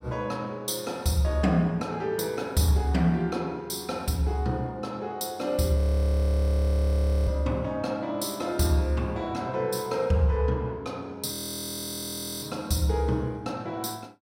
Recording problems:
audio freezing; at 6 s for 1.5 s and at 11 s for 1 s

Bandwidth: 16 kHz